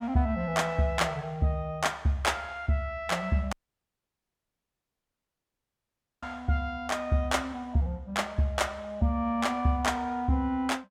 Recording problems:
dropout; at 3.5 s for 2.5 s

